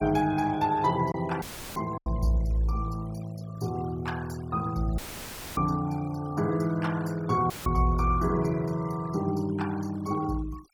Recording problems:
noise reduction artefacts; signal-to-artefact ratio 21 dB
packet loss; 1.1% of the sound replaced, filled with silence
dropout; at 1.5 s, at 5 s for 0.5 s and at 7.5 s; filled with static

